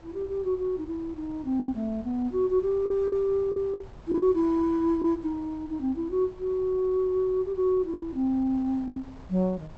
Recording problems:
low-pass filter; nothing above 7.9 kHz
wind on the microphone; below 360 Hz, SNR 22 dB
lost packets; 5% of the sound replaced, filled with the last packet

